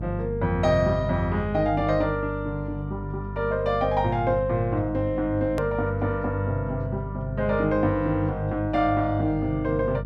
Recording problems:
mains hum; 50 Hz, harmonics up to 500 Hz, SNR 7 dB
hard cut with a click; at 5.5 s

